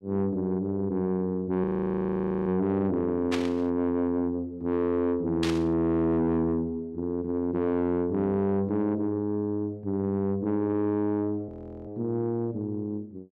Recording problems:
distorted audio; soft clipping, signal-to-distortion ratio 12 dB
frozen audio; at 1.5 s for 1 s and at 11 s
static burst; at 3.5 s and at 5.5 s; peak -1 dB vs average level

